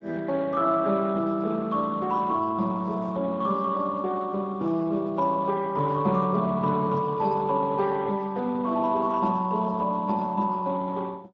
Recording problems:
lossy compression; Speex, log-spectral distance 3 dB

